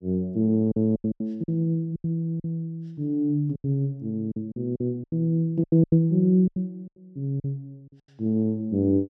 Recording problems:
lost packets; 12% of the sound replaced, filled with silence

